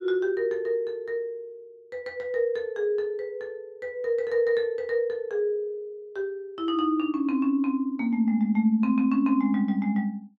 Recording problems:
none

